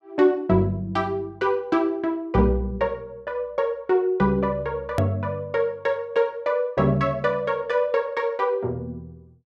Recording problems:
hard cut with a click; at 5 s

